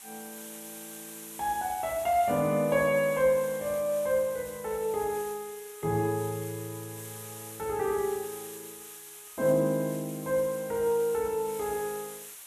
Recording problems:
background hiss; SNR 14 dB

